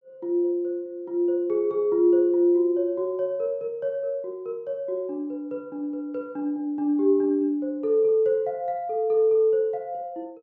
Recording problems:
treble cut off; nothing above 7.7 kHz

